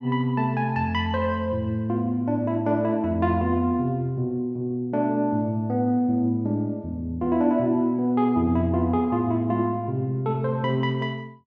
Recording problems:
none

